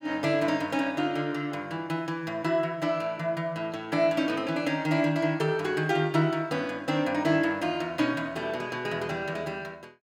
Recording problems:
none

